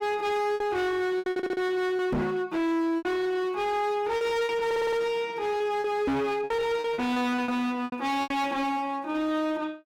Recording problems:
distorted audio; hard clipping, signal-to-distortion ratio 7 dB
lost packets; 9% of the sound replaced, filled with repeated pitch periods
audio stuttering; at 1.5 s and at 4.5 s
microphone bump; at 2 s and at 6 s; peak +3 dB vs average level

